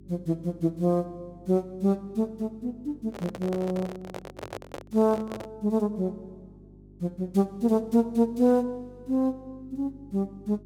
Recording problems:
hum; 50 Hz, harmonics up to 400 Hz, SNR 24 dB
microphone handling noise; from 3 to 5.5 s; peak -5 dB vs average level

